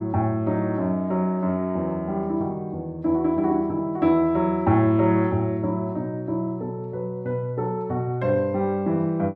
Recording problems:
none

